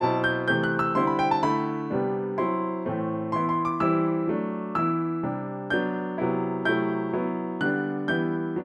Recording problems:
none

